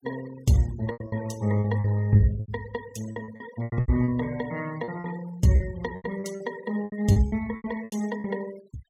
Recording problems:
noise reduction artefacts; signal-to-artefact ratio 19 dB
lost packets; 15% of the sound replaced, filled with repeated pitch periods

